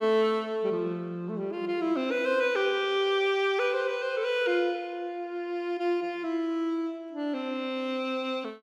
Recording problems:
none

